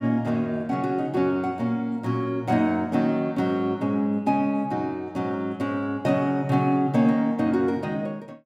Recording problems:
none

